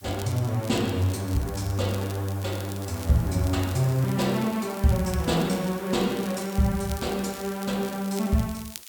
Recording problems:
background hiss; slope +4 dB per octave, SNR 19 dB
crackle; vinyl, SNR 18 dB

